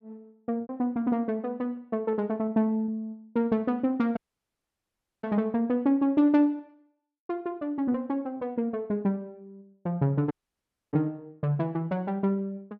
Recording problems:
lost packets; 2% of the sound replaced, filled with repeated pitch periods
dropout; at 4 s for 1 s and at 10 s for 0.5 s

